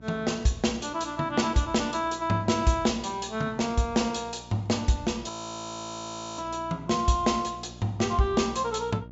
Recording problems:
low-pass filter; nothing above 8 kHz
hum; 60 Hz, harmonics up to 960 Hz, SNR 20 dB
frozen audio; at 5.5 s for 1 s

